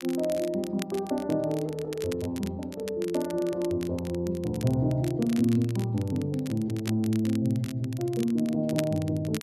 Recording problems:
crackle; vinyl, SNR 17 dB

